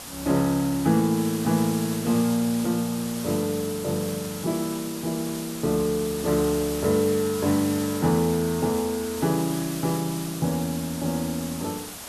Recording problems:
background hiss; slope -2 dB per octave, SNR 10 dB

